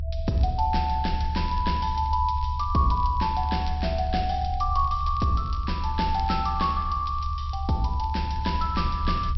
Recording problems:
low-pass filter; nothing above 5.6 kHz
low-frequency rumble; below 74 Hz, strongest tone 72 Hz, SNR 4 dB
crackling; vinyl, SNR 27 dB

